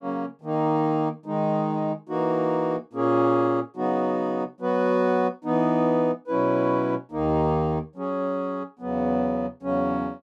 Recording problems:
none

